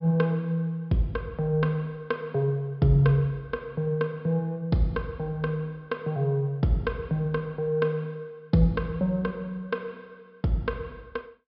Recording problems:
treble missing; nothing above 5.3 kHz

